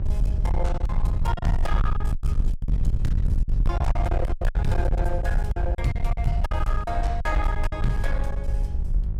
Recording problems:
distortion; hard clipping, uneven, signal-to-distortion ratio 8 dB
hum; 50 Hz, harmonics up to 600 Hz, SNR 4 dB
low-frequency rumble; below 64 Hz, SNR -4 dB
lost packets; 12% of the sound replaced, filled with silence

